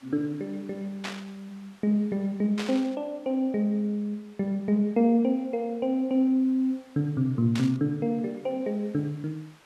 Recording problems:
hiss; SNR 30 dB
static burst; at 1 s, at 2.5 s and at 7.5 s; peak -3 dB vs average level

